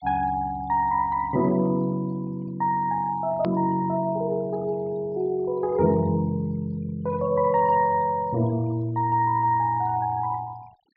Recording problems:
treble missing; nothing above 5.5 kHz
noise reduction artefacts; signal-to-artefact ratio 26 dB
hard cut with a click; at 3.5 s

